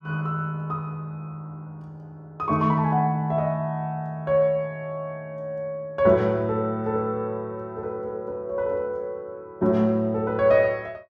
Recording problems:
none

